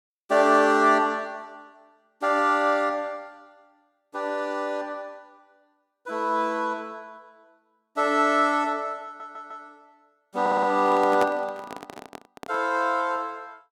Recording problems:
stutter; at 9 s and at 10 s
microphone handling noise; from 10 to 13 s; peak -2 dB vs average level

